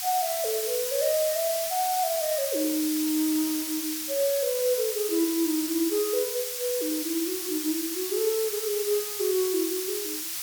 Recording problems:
background hiss; slope +5 dB per octave, SNR 2 dB

